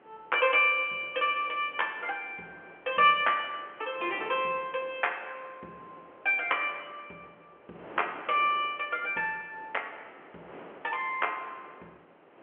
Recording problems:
phone line; 260 Hz to 3.3 kHz, G.711
wind noise; below 1.2 kHz, SNR 22 dB

